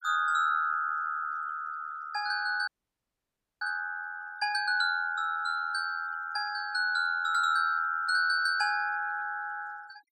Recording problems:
denoising artefacts; signal-to-artefact ratio 24 dB
frozen audio; at 2.5 s for 1 s

